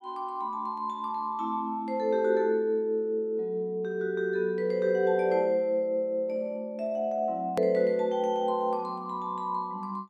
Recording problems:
click at an edit; at 7.5 s

